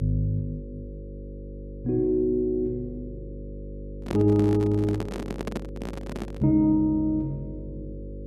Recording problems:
hum; 50 Hz, harmonics up to 550 Hz, SNR 14 dB
handling noise; from 4 to 6.5 s; peak -3 dB vs average level

